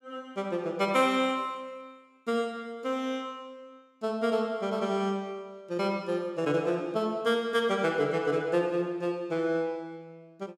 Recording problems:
none

